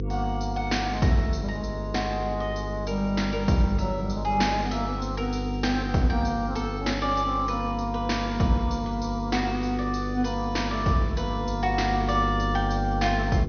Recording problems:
low-pass filter; nothing above 6.4 kHz
electrical hum; 50 Hz, harmonics up to 500 Hz, SNR 6 dB

